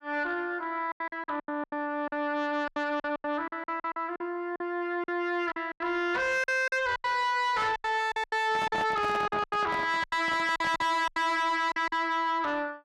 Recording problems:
distortion; soft clipping, signal-to-distortion ratio 7 dB
packet loss; 14% of the sound replaced, filled with silence
microphone handling noise; from 8.5 to 11 s; peak -2 dB vs average level

